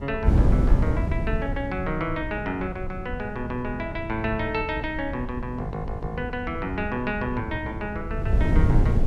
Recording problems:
wind on the microphone; below 130 Hz, SNR -1 dB

